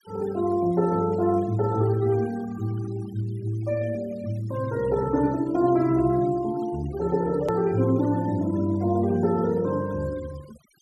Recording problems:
noise reduction artefacts; signal-to-artefact ratio 22 dB
click at an edit; at 7.5 s

